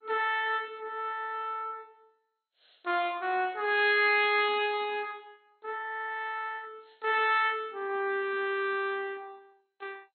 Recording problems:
lossy codec; MP2, log-spectral distance 3 dB, nothing above 3.6 kHz

